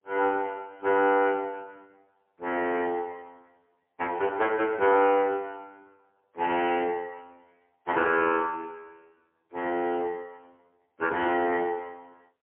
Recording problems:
telephone audio; 320 Hz to 3 kHz, AMR-NB, then MP3

